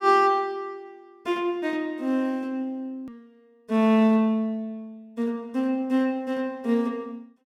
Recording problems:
click at an edit; at 3 s

